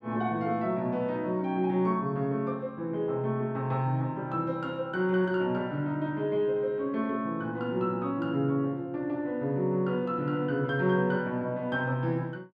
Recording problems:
none

